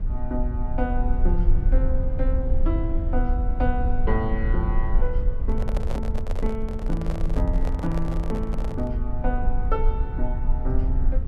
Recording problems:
rumble; below 52 Hz, strongest tone 20 Hz, SNR -4 dB
handling noise; from 5.5 to 9 s; peak +1 dB vs average level

